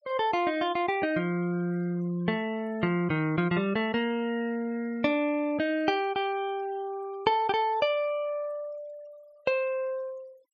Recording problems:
noise reduction artefacts; signal-to-artefact ratio 26 dB

